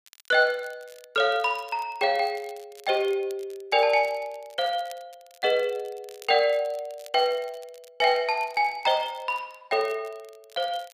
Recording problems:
crackle; vinyl, SNR 27 dB

